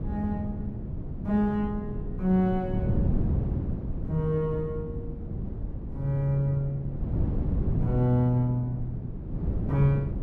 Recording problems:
wind on the microphone; below 190 Hz, SNR 4 dB

